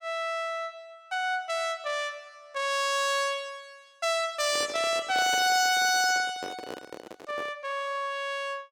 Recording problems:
distortion; soft clipping, signal-to-distortion ratio 10 dB
handling noise; from 4.5 to 7.5 s; peak -6 dB vs average level

